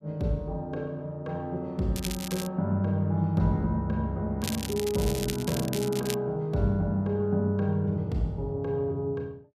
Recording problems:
crackling; at 2 s and from 4.5 to 6 s; loose cable, SNR 8 dB

